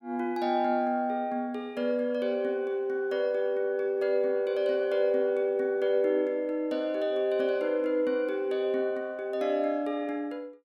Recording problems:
none

